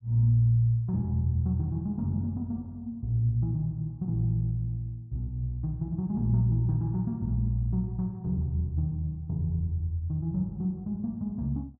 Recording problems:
none

